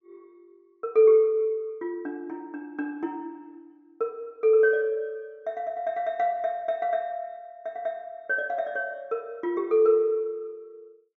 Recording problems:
treble missing; nothing above 6.5 kHz

